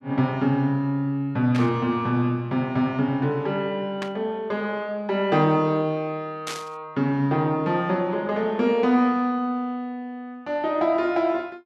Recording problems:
static burst; at 1.5 s, at 4 s and at 6.5 s; peak -4 dB vs average level

